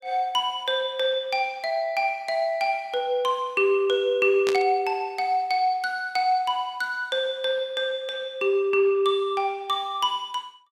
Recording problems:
static burst; at 4.5 s; peak -1 dB vs average level

